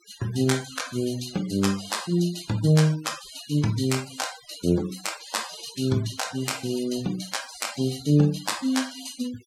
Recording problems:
noise reduction artefacts; signal-to-artefact ratio 16 dB

